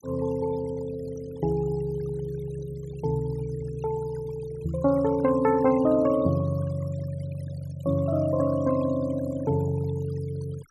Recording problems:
noise reduction artefacts; signal-to-artefact ratio 20 dB

